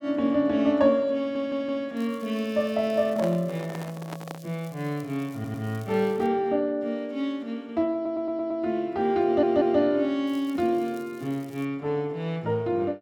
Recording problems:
stutter; 4 times, first at 1 s
crackle; from 2 to 6.5 s and from 10 to 12 s; loose cable, SNR 27 dB
handling noise; from 3 to 4.5 s; peak -5 dB vs average level

